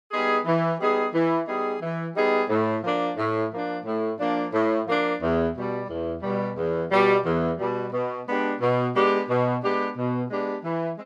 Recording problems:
none

